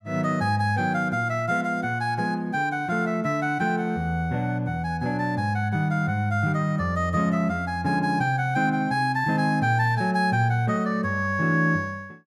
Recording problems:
none

